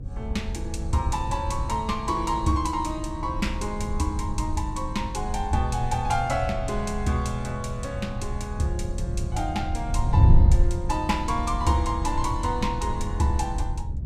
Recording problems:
hum; 60 Hz, harmonics up to 540 Hz, SNR 24 dB
wind noise; below 100 Hz, SNR 1 dB

